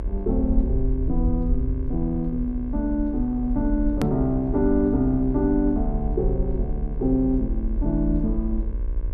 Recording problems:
hum; 60 Hz, harmonics up to 2.2 kHz, SNR 18 dB
rumble; below 54 Hz, SNR 4 dB
edit click; at 4 s

